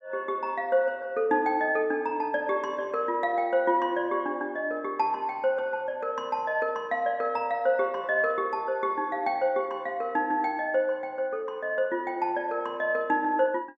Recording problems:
none

